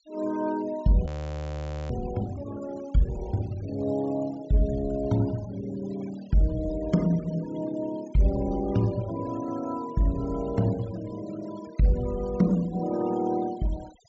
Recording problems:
treble missing; nothing above 8 kHz
noise reduction artefacts; signal-to-artefact ratio 20 dB
frozen audio; at 1 s for 1 s

